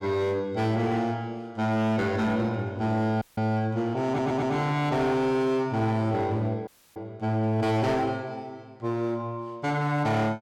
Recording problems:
distortion; hard clipping, signal-to-distortion ratio 11 dB
dropout; at 3 s and at 6.5 s
audio stuttering; at 4 s

